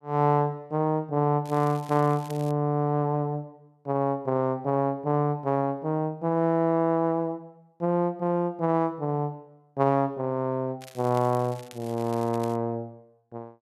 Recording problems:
crackle; from 1.5 to 2.5 s and from 11 to 13 s; loose cable, SNR 22 dB

